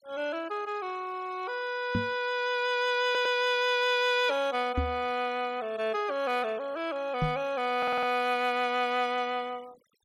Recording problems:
noise reduction artefacts; signal-to-artefact ratio 23 dB
microphone thump; at 2 s, at 5 s and at 7 s; peak +2 dB vs average level
stutter; at 3 s and at 8 s

